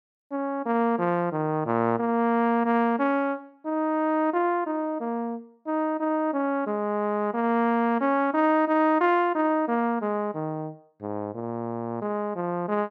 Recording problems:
none

